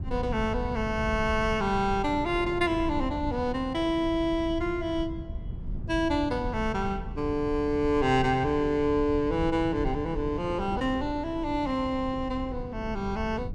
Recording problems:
low-frequency rumble; below 120 Hz, SNR 10 dB
wind noise; below 430 Hz, SNR 19 dB

